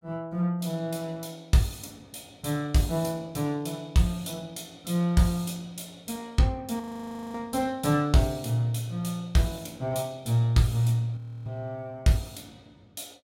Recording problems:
frozen audio; at 7 s for 0.5 s and at 11 s

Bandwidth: 16 kHz